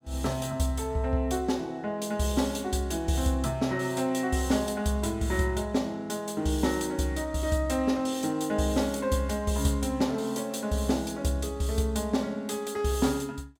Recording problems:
none

